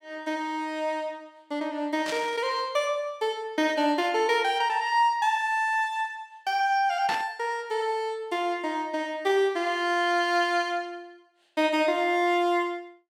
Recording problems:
burst of static; at 2 s and at 7 s; peak -3 dB vs average level

